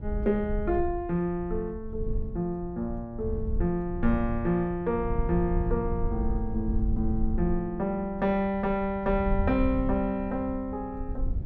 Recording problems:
low-frequency rumble; below 78 Hz, SNR 6 dB

